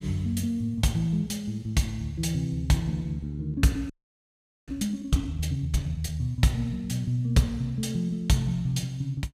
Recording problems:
frozen audio; at 4 s for 1 s

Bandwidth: 14.5 kHz